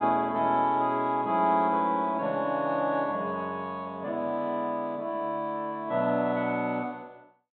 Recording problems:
treble missing; nothing above 4 kHz

